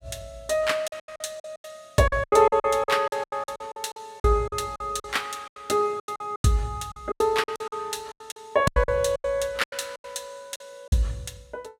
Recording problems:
packet loss; 18% of the sound replaced, filled with silence

